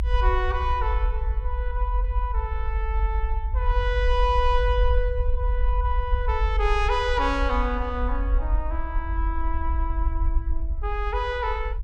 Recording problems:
low-frequency rumble; below 58 Hz, SNR -1 dB

